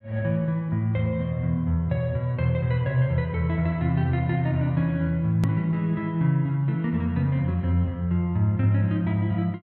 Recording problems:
click at an edit; at 5.5 s

